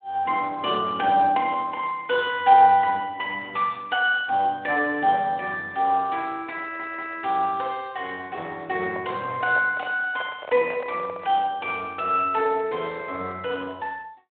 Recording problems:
telephone audio; 280 Hz to 3.4 kHz, Speex
audio stuttering; at 6.5 s
microphone handling noise; from 9 to 11 s; peak -7 dB vs average level

